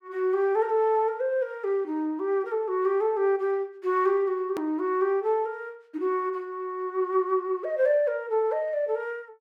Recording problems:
hard cut with a click; at 4.5 s

